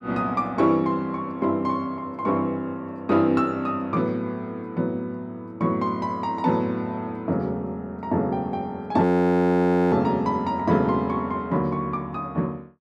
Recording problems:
frozen audio; at 9 s for 1 s

